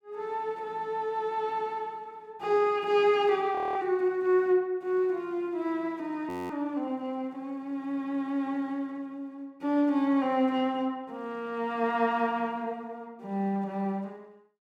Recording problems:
audio freezing; at 3.5 s and at 6.5 s

